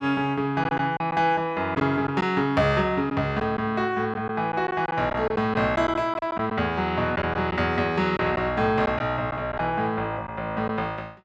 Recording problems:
lost packets; 5% of the sound replaced, filled with silence

